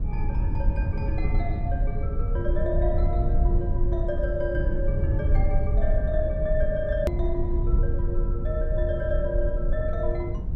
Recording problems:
rumble; below 78 Hz, SNR -4 dB
click at an edit; at 7 s

